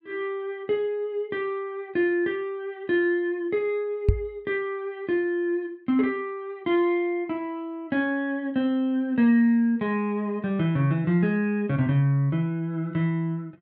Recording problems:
knock on the microphone; at 4 s; peak +9 dB vs average level

